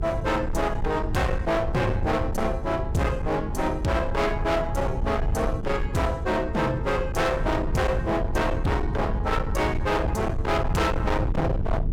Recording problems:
distortion; hard clipping, uneven, signal-to-distortion ratio 6 dB
electrical hum; 50 Hz, harmonics up to 450 Hz, SNR 14 dB
low-frequency rumble; below 130 Hz, SNR 4 dB

